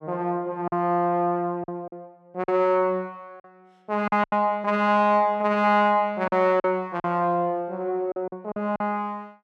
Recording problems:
packet loss; 7% of the sound replaced, filled with silence

